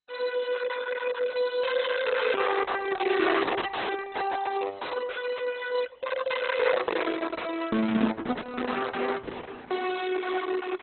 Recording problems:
lossy compression; Opus, then MP2, log-spectral distance 6 dB, nothing above 4 kHz

